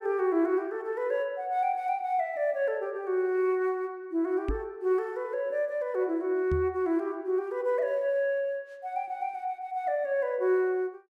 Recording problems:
microphone thump; at 4.5 s and at 6.5 s; peak +1 dB vs average level

